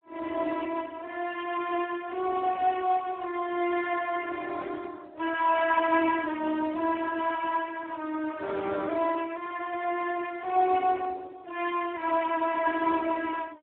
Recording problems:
telephone audio; 260 Hz to 2.2 kHz, Speex

